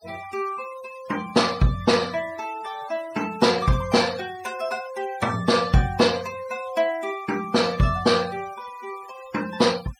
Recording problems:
noise reduction artefacts; signal-to-artefact ratio 18 dB

